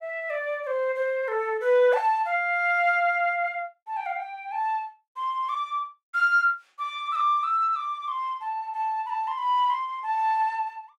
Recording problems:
none

